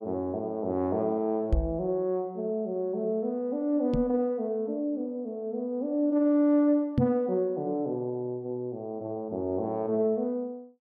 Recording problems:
microphone thump; at 1.5 s, at 4 s and at 7 s; peak +7 dB vs average level

